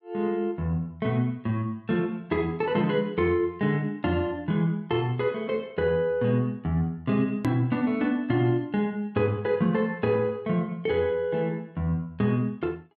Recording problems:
edit click; at 7.5 s

